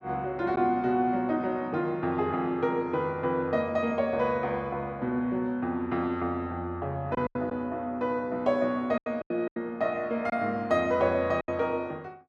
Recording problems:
lost packets; 4% of the sound replaced, filled with silence

